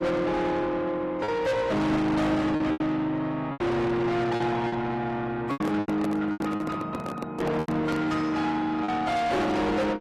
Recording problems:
lossy codec; AAC, log-spectral distance 2 dB, nothing above 13.1 kHz
distortion; soft clipping, signal-to-distortion ratio 6 dB
packet loss; 7% of the sound replaced, filled with repeated pitch periods
handling noise; from 5.5 to 8 s; peak +1 dB vs average level

